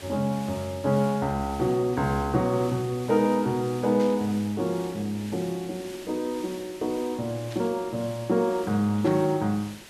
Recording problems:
hiss; SNR 18 dB
static burst; at 4 s, at 7.5 s and at 9 s; peak -11 dB vs average level

